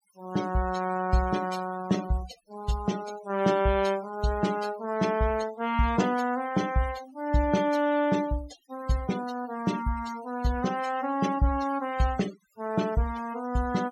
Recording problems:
denoising artefacts; signal-to-artefact ratio 16 dB

